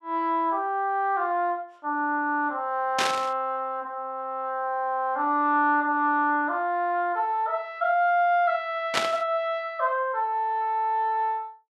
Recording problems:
static burst; at 3 s and at 9 s; peak +4 dB vs average level

